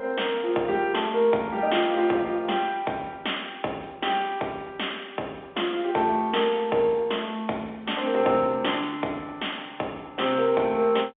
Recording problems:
phone line; 280 Hz to 3.6 kHz, G.711

